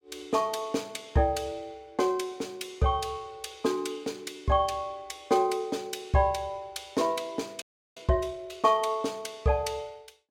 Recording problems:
frozen audio; at 7.5 s

